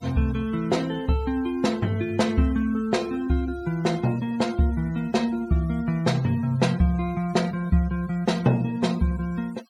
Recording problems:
noise reduction artefacts; signal-to-artefact ratio 23 dB

